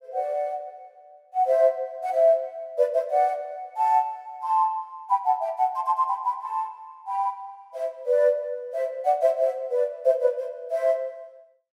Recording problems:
none

